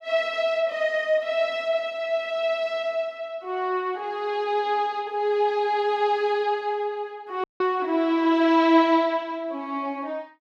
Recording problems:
dropout; at 7.5 s

